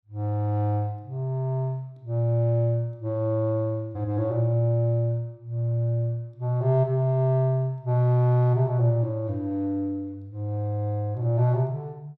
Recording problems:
none

